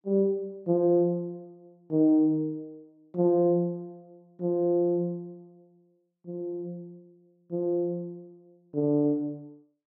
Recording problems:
none

